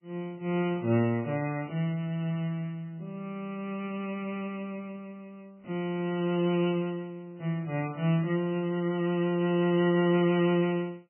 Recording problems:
lossy codec; MP3, log-spectral distance 2 dB, nothing above 3 kHz

